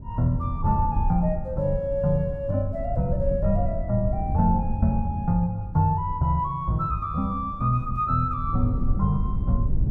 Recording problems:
wind noise; below 100 Hz, SNR 6 dB

